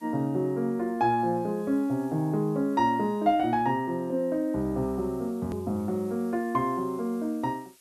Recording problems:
background hiss; slope +1 dB per octave, SNR 29 dB
click at an edit; at 5.5 s

